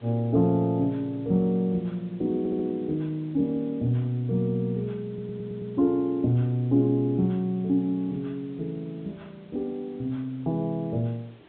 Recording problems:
treble cut off; nothing above 4 kHz
hiss; SNR 27 dB
audio stuttering; at 2.5 s and at 5 s

